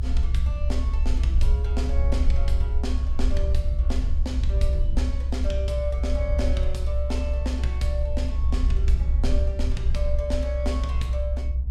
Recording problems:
rumble; below 64 Hz, SNR -8 dB

